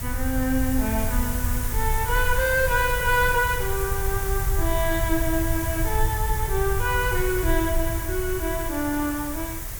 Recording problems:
hiss; slope -3 dB per octave, SNR 6 dB
low-frequency rumble; below 78 Hz, SNR 4 dB

